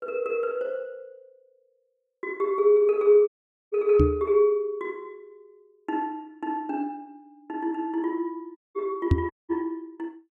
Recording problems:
audio cutting out; at 3.5 s, at 8.5 s and at 9.5 s
microphone thump; at 4 s and at 9 s; peak +8 dB vs average level

